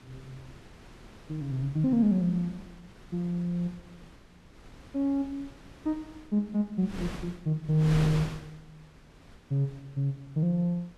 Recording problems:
wind noise; below 790 Hz, SNR 15 dB

